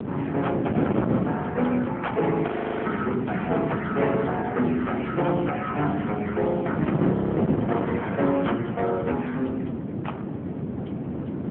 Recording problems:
phone line; 110 Hz to 3.3 kHz, AMR-NB
distorted audio; soft clipping, signal-to-distortion ratio 7 dB
wind on the microphone; below 400 Hz, SNR 2 dB
audio freezing; at 2.5 s and at 7 s

